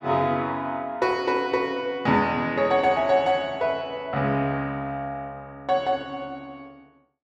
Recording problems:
none

